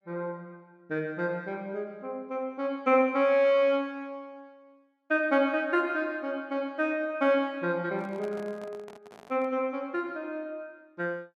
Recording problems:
microphone handling noise; from 8 to 9.5 s; peak -11 dB vs average level

